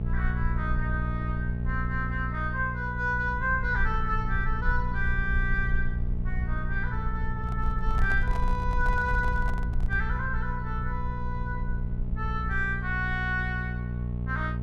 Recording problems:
hum; 60 Hz, harmonics up to 660 Hz, SNR 2 dB
rumble; below 54 Hz, SNR 3 dB
handling noise; from 7.5 to 10 s; peak -6 dB vs average level

